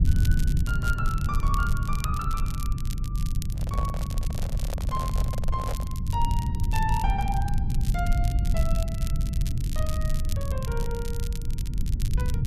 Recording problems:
low-frequency rumble; below 100 Hz, SNR -6 dB
crackle; vinyl, SNR 8 dB
handling noise; from 3.5 to 6 s; peak +2 dB vs average level

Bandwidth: 14 kHz